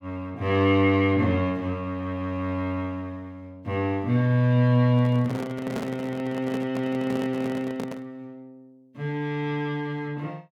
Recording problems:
handling noise; from 5 to 8 s; peak -2 dB vs average level

